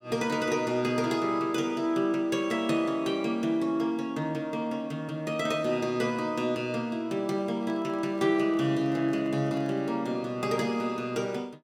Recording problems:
microphone handling noise; from 7.5 to 10 s; peak -13 dB vs average level

